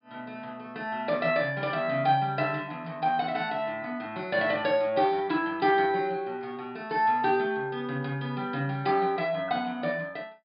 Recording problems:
low-pass filter; nothing above 5 kHz

